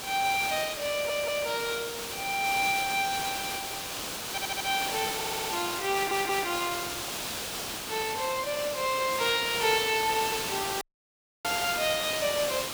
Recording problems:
hiss; slope -2 dB per octave, SNR 4 dB
stutter; 4 times, first at 1 s
dropout; at 11 s for 0.5 s

